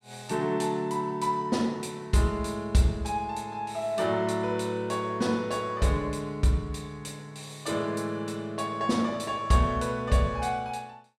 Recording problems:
none

